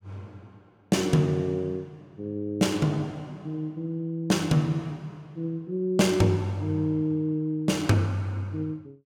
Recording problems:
none

